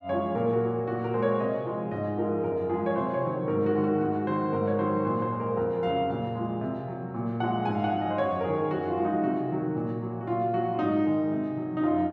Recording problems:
none

